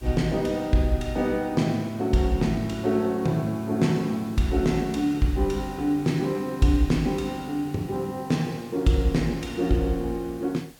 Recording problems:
background hiss; SNR 25 dB

